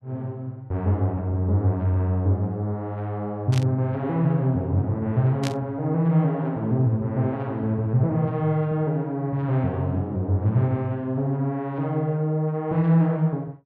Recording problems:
burst of static; at 3.5 s and at 5.5 s; peak -4 dB vs average level

